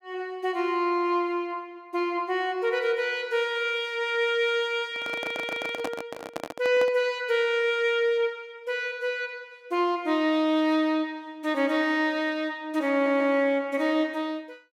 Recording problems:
handling noise; from 5 to 7 s; peak -1 dB vs average level
stutter; at 5 s and at 13 s

